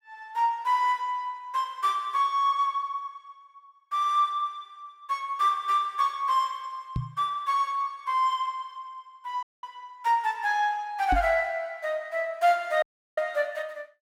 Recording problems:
microphone thump; at 7 s and at 11 s; peak 0 dB vs average level
audio cutting out; at 9.5 s and at 13 s

